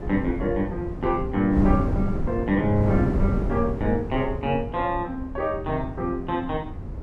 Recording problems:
wind on the microphone; below 200 Hz, SNR 4 dB

